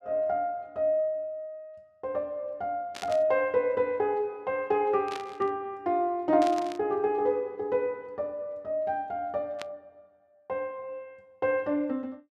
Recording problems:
burst of static; 4 times, first at 3 s; peak -6 dB vs average level

